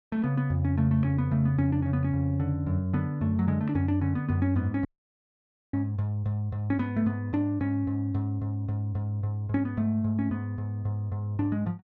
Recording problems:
dropout; at 5 s for 1 s

